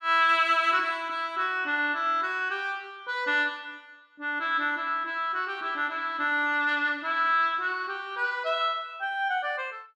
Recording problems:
none

